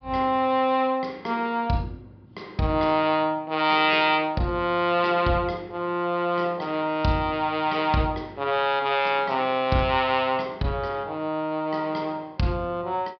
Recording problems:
treble missing; nothing above 5.5 kHz

